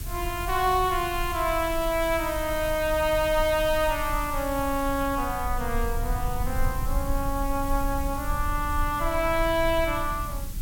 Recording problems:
background hiss; slope +1 dB per octave, SNR 13 dB
low-frequency rumble; below 64 Hz, SNR 8 dB

